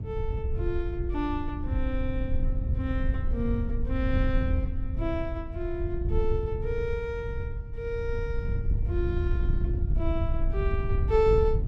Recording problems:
wind noise; below 82 Hz, SNR -2 dB

